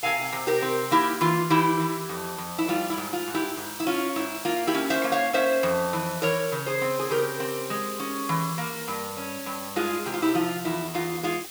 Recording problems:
hiss; slope +2 dB per octave, SNR 10 dB

